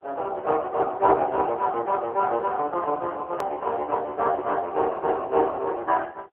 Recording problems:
phone line; 280 Hz to 3.2 kHz, AMR-NB
hard cut with a click; at 3.5 s

